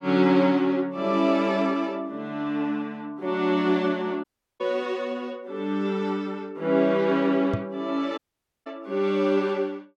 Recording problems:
dropout; at 4 s and at 8 s
microphone bump; at 7.5 s; peak 0 dB vs average level

